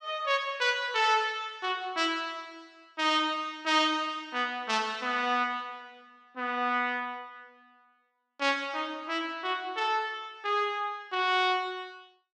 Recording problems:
none

